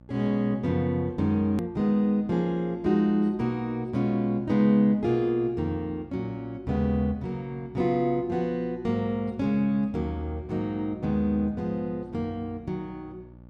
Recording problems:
hum; 60 Hz, harmonics up to 1.2 kHz, SNR 23 dB
hard cut with a click; at 1.5 s

